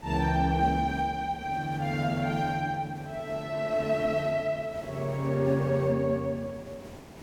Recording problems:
background hiss; SNR 18 dB

